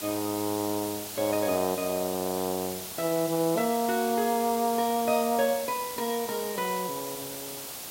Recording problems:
hiss; SNR 7 dB

